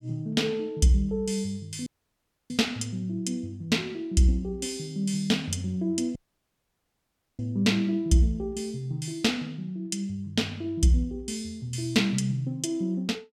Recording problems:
dropout; at 2 s for 0.5 s and at 6 s for 1 s

